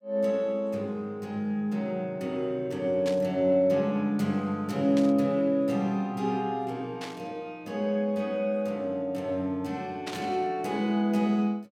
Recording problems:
burst of static; 4 times, first at 3 s; peak -5 dB vs average level

